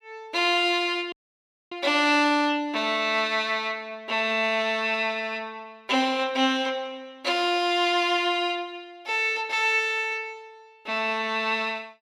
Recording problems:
dropout; at 1 s for 0.5 s

